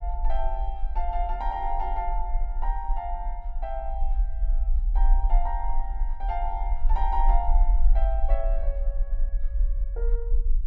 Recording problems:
low-frequency rumble; below 40 Hz, SNR -5 dB

